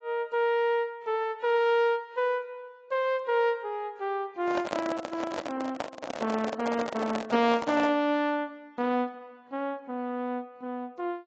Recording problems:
codec artefacts; AAC, log-spectral distance 2 dB
microphone handling noise; from 4.5 to 8 s; peak +1 dB vs average level

